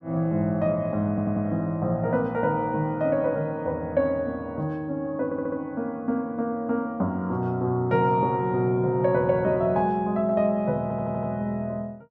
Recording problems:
stutter; at 1 s, at 5.5 s and at 11 s

